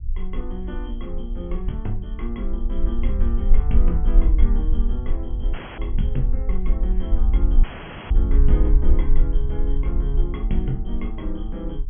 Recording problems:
treble missing; nothing above 3.3 kHz
low-frequency rumble; below 46 Hz, strongest tone 20 Hz, SNR -7 dB
audio cutting out; at 5.5 s and at 7.5 s

